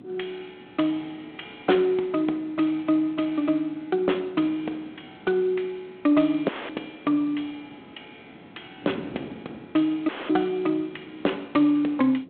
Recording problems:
phone line; 220 Hz to 3.6 kHz, G.726
wind on the microphone; below 400 Hz, SNR 21 dB
dropout; at 6.5 s and at 10 s

